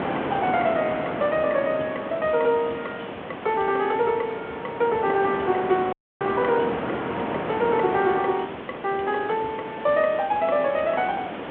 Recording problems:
telephone audio; 220 Hz to 3.5 kHz, G.726
background hiss; SNR 21 dB
wind noise; below 1.1 kHz, SNR 7 dB
audio cutting out; at 6 s

